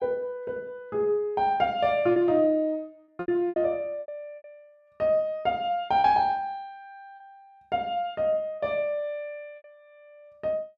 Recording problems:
packet loss; 6% of the sound replaced, filled with repeated pitch periods

